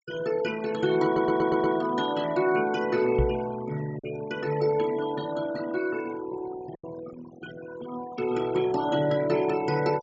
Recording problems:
treble cut off; nothing above 8 kHz
denoising artefacts; signal-to-artefact ratio 17 dB
packet loss; 1.3% of the sound replaced, filled with silence
audio stuttering; at 1 s
microphone bump; at 3 s; peak +4 dB vs average level

